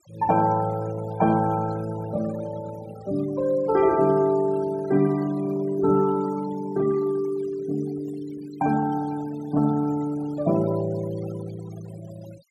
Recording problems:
denoising artefacts; signal-to-artefact ratio 19 dB

